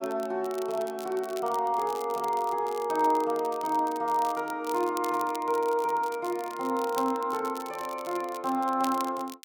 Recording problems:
crackle; vinyl, SNR 17 dB

